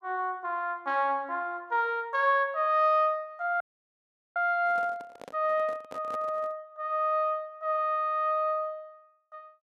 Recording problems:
audio freezing; at 3.5 s for 1 s
microphone handling noise; from 4.5 to 6.5 s; peak -11 dB vs average level

